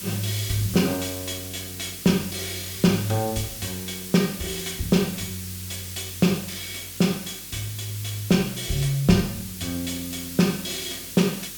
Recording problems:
mains hum; 50 Hz, harmonics up to 500 Hz, SNR 26 dB
hiss; slope +3 dB per octave, SNR 9 dB

